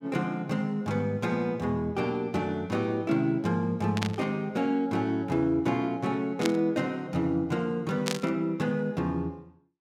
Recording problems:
static burst; at 4 s, at 6.5 s and at 8 s; peak +2 dB vs average level

